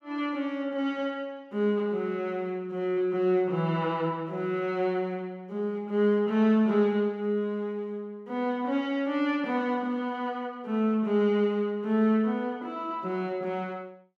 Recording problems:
none

